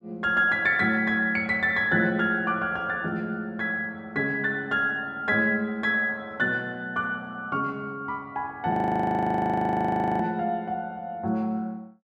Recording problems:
frozen audio; at 8.5 s for 1.5 s

